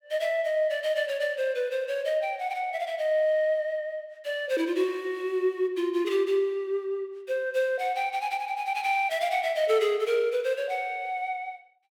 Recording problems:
none

